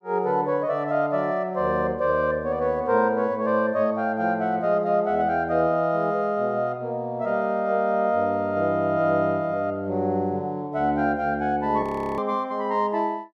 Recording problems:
frozen audio; at 12 s

